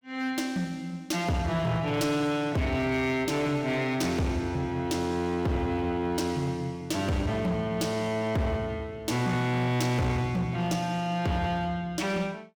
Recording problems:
distorted audio; hard clipping, signal-to-distortion ratio 12 dB

